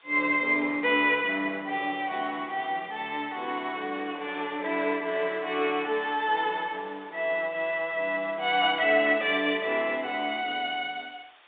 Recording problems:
telephone audio; 260 Hz to 3.7 kHz, G.726
hiss; SNR 28 dB

